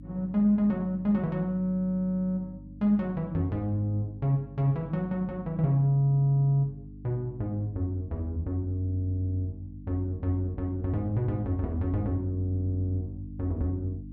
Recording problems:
hum; 50 Hz, harmonics up to 300 Hz, SNR 15 dB

